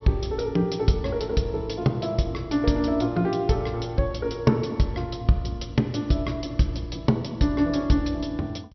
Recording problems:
low-pass filter; nothing above 5.8 kHz

